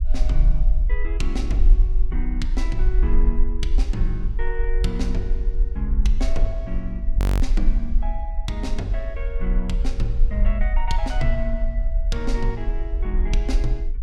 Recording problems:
low-frequency rumble; below 44 Hz, SNR -6 dB
audio freezing; at 7 s

